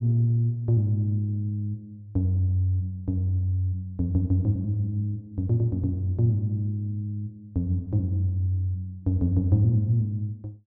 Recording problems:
none

